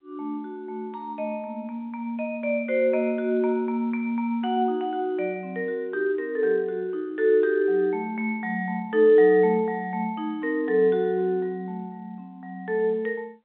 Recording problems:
phone line; 190 Hz to 3.5 kHz, G.711

